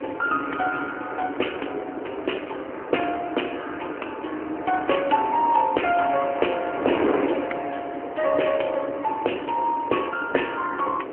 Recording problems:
phone line; 260 Hz to 3.1 kHz, AMR-NB
wind noise; below 610 Hz, SNR 6 dB

